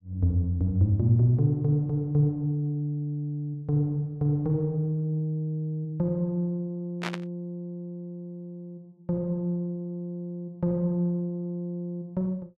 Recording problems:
burst of static; at 7 s; peak -1 dB vs average level

